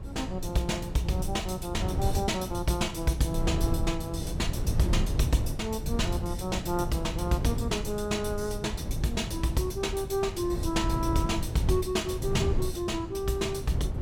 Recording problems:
wind on the microphone; below 140 Hz, SNR 3 dB

